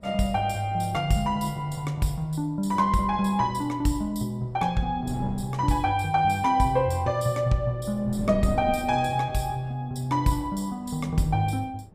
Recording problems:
wind noise; below 260 Hz, SNR 17 dB

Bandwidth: 15.5 kHz